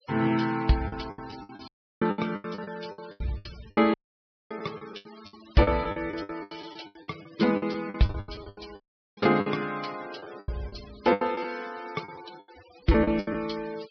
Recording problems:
low-pass filter; nothing above 5.5 kHz
noise reduction artefacts; signal-to-artefact ratio 20 dB
lost packets; 18% of the sound replaced, filled with the last packet
dropout; at 1.5 s, at 4 s for 0.5 s and at 9 s

